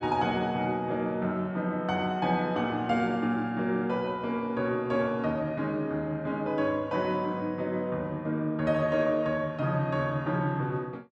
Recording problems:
none

